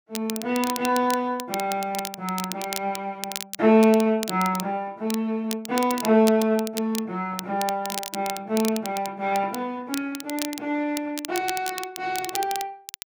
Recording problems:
crackle; vinyl, SNR 10 dB

